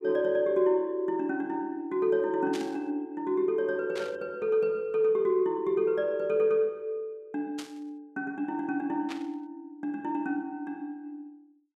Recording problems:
burst of static; 4 times, first at 2.5 s; peak -7 dB vs average level

